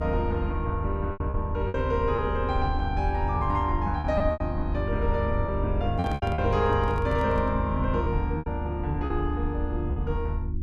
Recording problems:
electrical hum; 50 Hz, harmonics up to 350 Hz, SNR 9 dB
low-frequency rumble; below 76 Hz, strongest tone 76 Hz, SNR 3 dB
packet loss; 7% of the sound replaced, filled with repeated pitch periods
microphone handling noise; from 6 to 7.5 s; peak -5 dB vs average level

